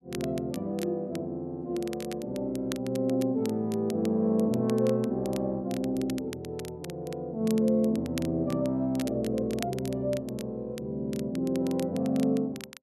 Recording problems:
crackle; vinyl, SNR 17 dB

